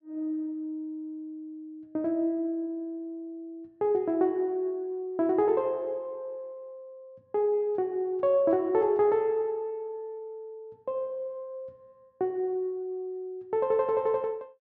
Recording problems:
none

